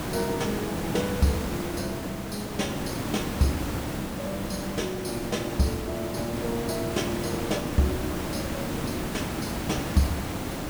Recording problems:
background hiss; slope -6 dB per octave, SNR 1 dB

